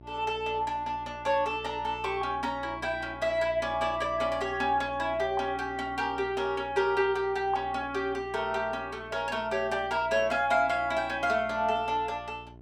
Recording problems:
hum; 60 Hz, harmonics up to 1 kHz, SNR 20 dB

